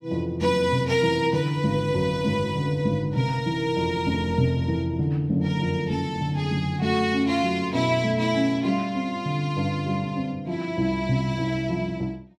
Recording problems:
none

